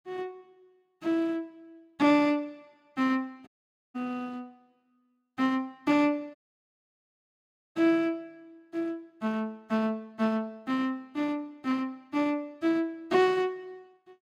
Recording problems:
audio cutting out; at 3.5 s and at 6.5 s for 1.5 s

